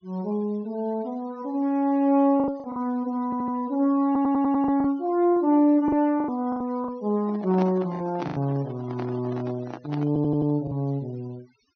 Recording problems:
treble missing; nothing above 6.3 kHz
denoising artefacts; signal-to-artefact ratio 28 dB
lost packets; 7% of the sound replaced, filled with the last packet
stutter; at 3.5 s, at 4 s and at 10 s
microphone handling noise; from 7 to 11 s; peak -4 dB vs average level

